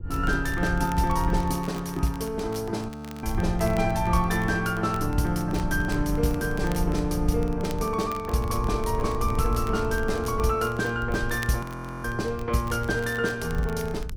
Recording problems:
wind on the microphone; below 78 Hz, SNR 8 dB
crackling; vinyl, SNR 21 dB
frozen audio; at 3 s and at 12 s

